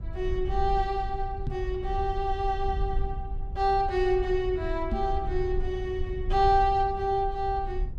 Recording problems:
rumble; below 64 Hz, SNR 7 dB
microphone bump; at 1.5 s and at 5 s; peak +1 dB vs average level

